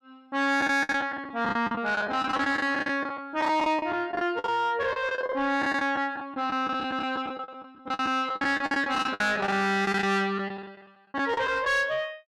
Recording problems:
distorted audio; soft clipping, signal-to-distortion ratio 10 dB
packet loss; 17% of the sound replaced, filled with the last packet

